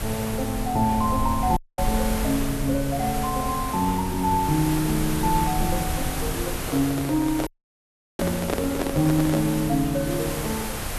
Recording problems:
hiss; slope -3 dB per octave, SNR 7 dB
rumble; below 86 Hz, SNR 10 dB
dropout; at 1.5 s and at 7.5 s for 0.5 s
microphone handling noise; from 6.5 to 9.5 s; peak +2 dB vs average level

